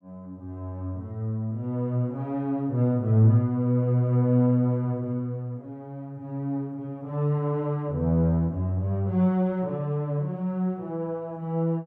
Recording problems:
none

